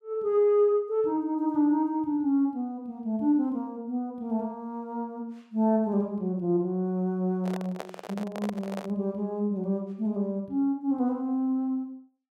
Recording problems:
handling noise; from 7.5 to 9 s; peak -4 dB vs average level

